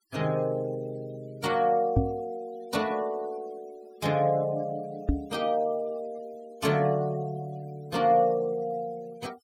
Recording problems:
noise reduction artefacts; signal-to-artefact ratio 23 dB
microphone thump; at 2 s and at 5 s; peak +8 dB vs average level

